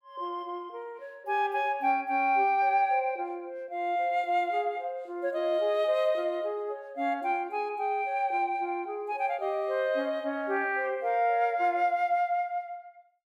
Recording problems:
none

